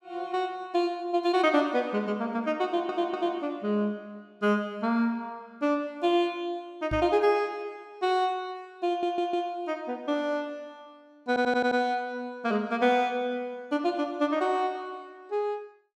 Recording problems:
stutter; at 2.5 s, at 9 s and at 11 s
microphone thump; at 7 s; peak -3 dB vs average level

